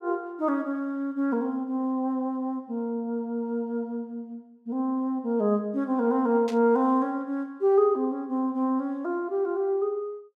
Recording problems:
static burst; at 6.5 s; peak -10 dB vs average level

